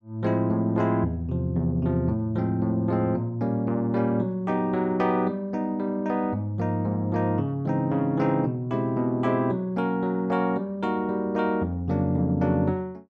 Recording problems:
none

